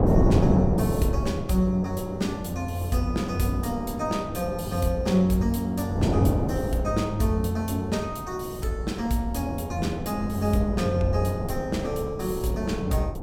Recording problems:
wind noise; below 350 Hz, SNR 4 dB

